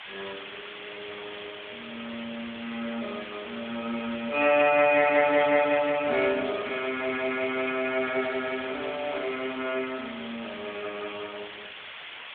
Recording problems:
phone line; 300 Hz to 3.5 kHz, AMR-NB
hiss; SNR 13 dB
crackling; from 4.5 to 7 s; loose cable, SNR 27 dB

